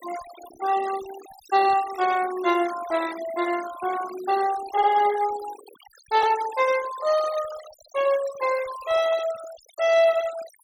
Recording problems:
noise reduction artefacts; signal-to-artefact ratio 16 dB

